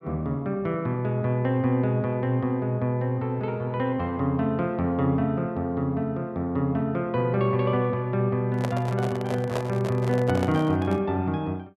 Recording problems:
microphone handling noise; from 8.5 to 11 s; peak 0 dB vs average level

